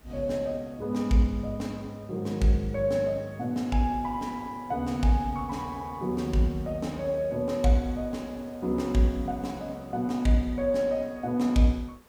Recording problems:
hiss; slope -5 dB per octave, SNR 27 dB

